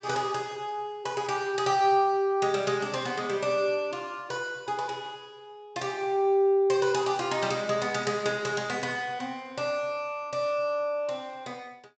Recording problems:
treble cut off; nothing above 8 kHz

